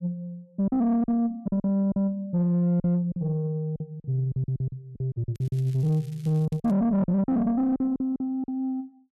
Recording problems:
distorted audio; soft clipping, signal-to-distortion ratio 10 dB
lost packets; 12% of the sound replaced, filled with silence
crackle; from 5.5 to 6.5 s; loose cable, SNR 29 dB

